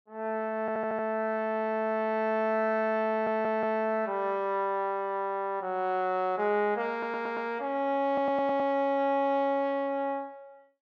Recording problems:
audio stuttering; 4 times, first at 0.5 s

